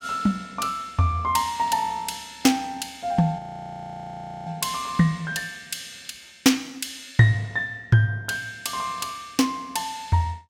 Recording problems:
audio freezing; at 3.5 s for 1 s

